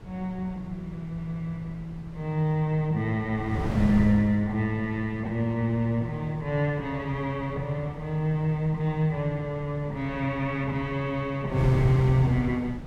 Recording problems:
wind on the microphone; below 210 Hz, SNR 9 dB

